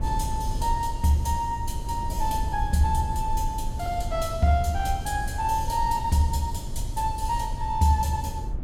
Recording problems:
mains hum; 60 Hz, harmonics up to 600 Hz, SNR 18 dB
low-frequency rumble; below 78 Hz, SNR 7 dB

